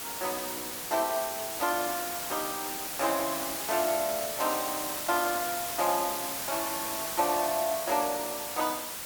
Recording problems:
background hiss; slope -1 dB per octave, SNR 2 dB

